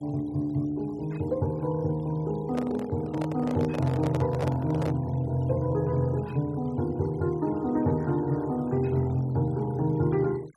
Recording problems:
denoising artefacts; signal-to-artefact ratio 26 dB
microphone handling noise; from 2.5 to 5 s; peak -2 dB vs average level

